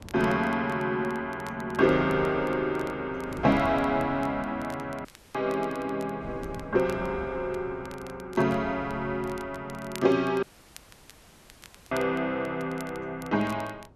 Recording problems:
wind on the microphone; below 350 Hz, SNR 18 dB
crackling; vinyl, SNR 23 dB
audio cutting out; at 5 s and at 10 s for 1.5 s

